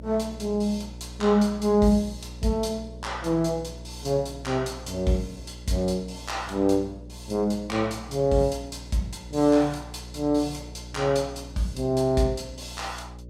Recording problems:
hum; 60 Hz, harmonics up to 600 Hz, SNR 16 dB

